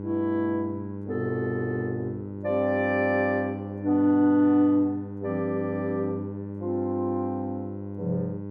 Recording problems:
hum; 50 Hz, harmonics up to 1 kHz, SNR 9 dB

